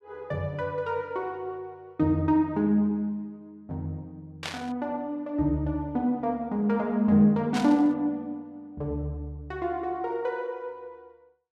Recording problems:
static burst; at 4.5 s and at 7.5 s; peak -2 dB vs average level

